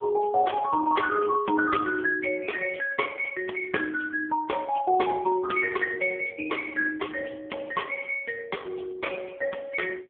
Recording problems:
telephone audio; 260 Hz to 2.7 kHz, AMR-NB

